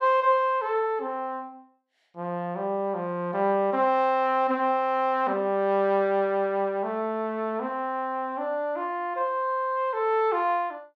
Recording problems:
none

